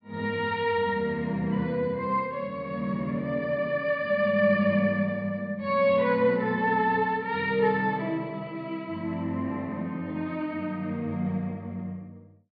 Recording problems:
treble missing; nothing above 5 kHz

